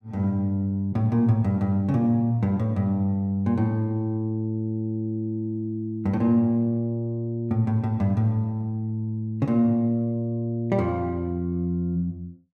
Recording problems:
none

